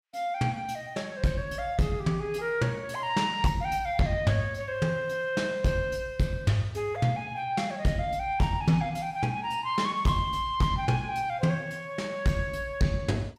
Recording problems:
distorted audio; hard clipping, signal-to-distortion ratio 10 dB

